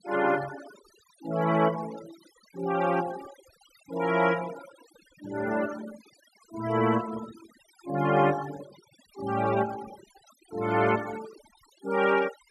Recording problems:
denoising artefacts; signal-to-artefact ratio 15 dB

